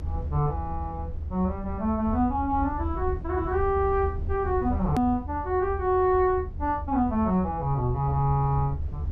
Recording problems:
low-frequency rumble; below 80 Hz, SNR 8 dB
hard cut with a click; at 5 s

